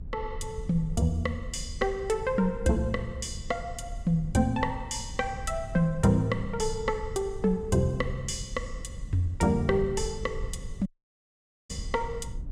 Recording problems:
low-frequency rumble; below 86 Hz, SNR 11 dB
audio cutting out; at 11 s for 1 s

